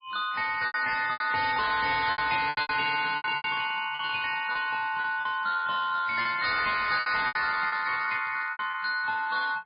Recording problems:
lossy codec; MP3, then MP3, log-spectral distance 5 dB, nothing above 4.8 kHz
distortion; hard clipping, signal-to-distortion ratio 10 dB
lost packets; 11% of the sound replaced, filled with repeated pitch periods

